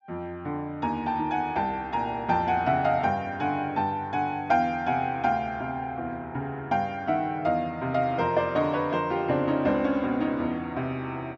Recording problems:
treble cut off; nothing above 8 kHz

